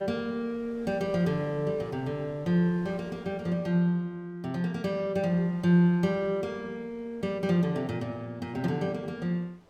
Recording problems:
wind noise; below 1.1 kHz, SNR 26 dB

